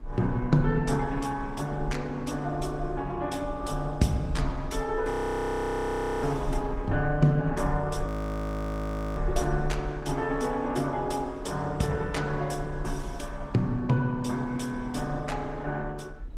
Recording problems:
lossy compression; Opus, log-spectral distance 2 dB, nothing above 17.7 kHz
low-frequency rumble; below 52 Hz, strongest tone 30 Hz, SNR 7 dB
wind on the microphone; below 430 Hz, SNR 21 dB
frozen audio; at 5 s for 1 s and at 8 s for 1 s

